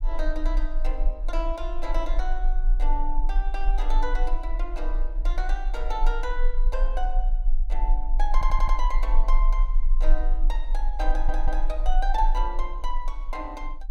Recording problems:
rumble; below 34 Hz, strongest tone 22 Hz, SNR -6 dB
audio stuttering; at 8.5 s and at 11 s

